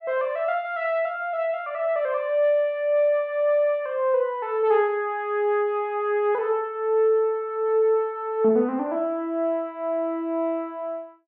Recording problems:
none

